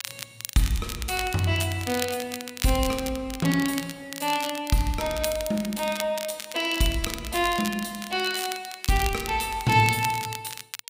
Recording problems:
crackle; vinyl, SNR 9 dB

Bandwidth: 15.5 kHz